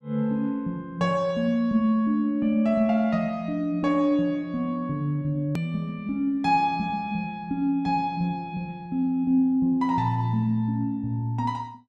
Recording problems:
click at an edit; at 5.5 s

